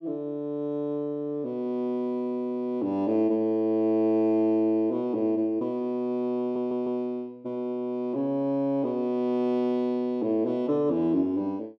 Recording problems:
stutter; at 6.5 s

